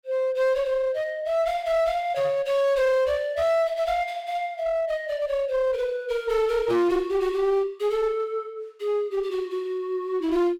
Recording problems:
distortion; hard clipping, uneven, signal-to-distortion ratio 9 dB

